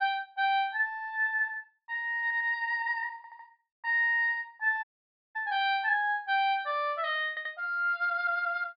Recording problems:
treble cut off; nothing above 5.5 kHz
audio stuttering; at 2 s, at 3 s and at 7.5 s
audio cutting out; at 5 s for 0.5 s

